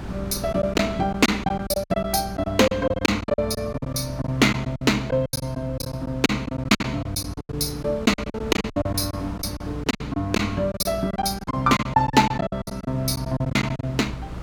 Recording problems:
hum; 60 Hz, harmonics up to 300 Hz, SNR 15 dB
wind on the microphone; below 550 Hz, SNR 16 dB
lost packets; 16% of the sound replaced, filled with silence

